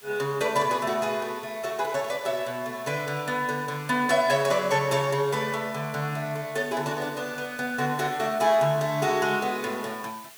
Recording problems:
background hiss; slope +1 dB per octave, SNR 20 dB

